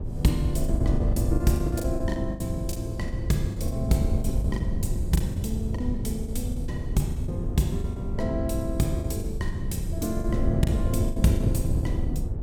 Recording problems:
wind noise; below 120 Hz, SNR -1 dB
packet loss; 12% of the sound replaced, filled with the last packet

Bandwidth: 17 kHz